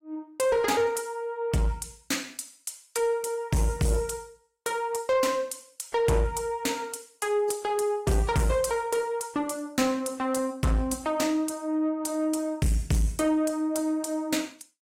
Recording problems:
codec artefacts; AAC, log-spectral distance 3 dB, nothing above 16 kHz
distortion; soft clipping, signal-to-distortion ratio 11 dB

